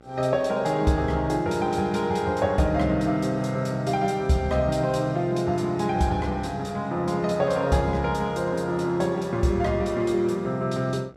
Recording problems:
hum; 60 Hz, harmonics up to 2.1 kHz, SNR 27 dB

